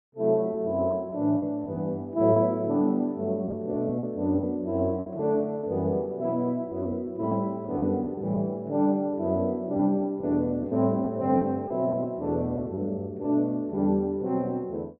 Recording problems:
lost packets; 5% of the sound replaced, filled with repeated pitch periods

